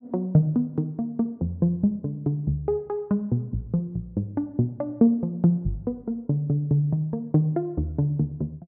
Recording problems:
none

